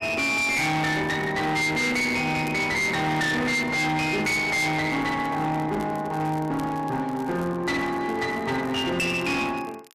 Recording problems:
distorted audio; hard clipping, uneven, signal-to-distortion ratio 7 dB
crackling; vinyl, SNR 27 dB

